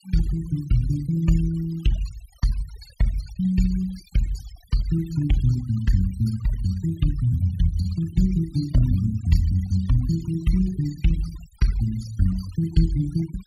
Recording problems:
denoising artefacts; signal-to-artefact ratio 17 dB

